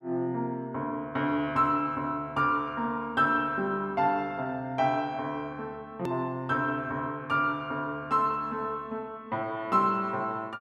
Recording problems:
hard cut with a click; at 6 s

